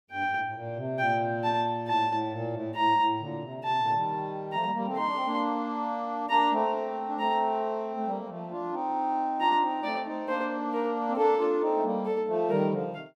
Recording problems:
none

